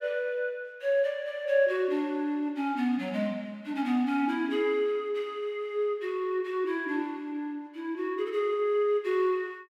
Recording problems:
none

